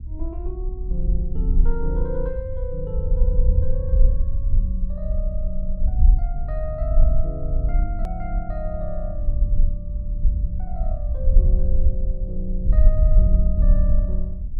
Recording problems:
low-frequency rumble; below 54 Hz, SNR -10 dB
click at an edit; at 8 s

